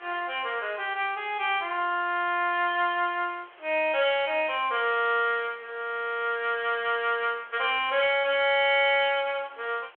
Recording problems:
phone line; 320 Hz to 3.4 kHz, G.726
background hiss; SNR 27 dB

